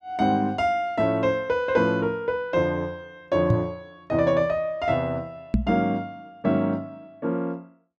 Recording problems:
microphone bump; at 3.5 s and at 5.5 s; peak +7 dB vs average level

